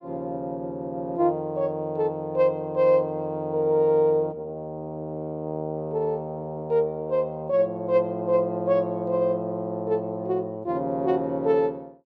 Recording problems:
none

